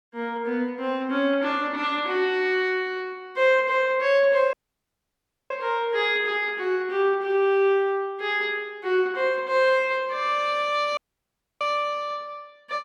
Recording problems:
dropout; at 4.5 s for 1 s and at 11 s for 0.5 s

